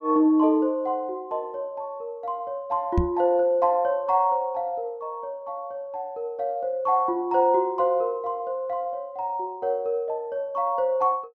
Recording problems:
microphone thump; at 3 s; peak +6 dB vs average level

